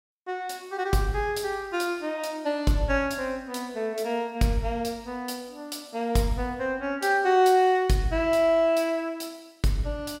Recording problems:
none

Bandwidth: 16.5 kHz